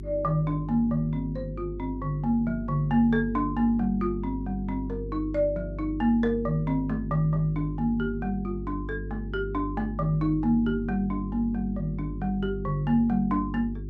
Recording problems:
mains hum; 50 Hz, harmonics up to 400 Hz, SNR 9 dB

